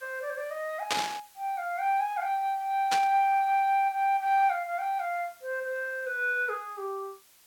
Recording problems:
background hiss; slope +1 dB per octave, SNR 26 dB
static burst; at 1 s and at 3 s; peak +5 dB vs average level

